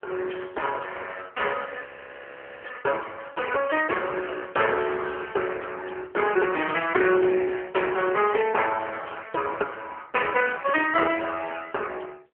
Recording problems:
telephone audio; 300 Hz to 3.1 kHz, AMR-NB
frozen audio; at 2 s for 1 s

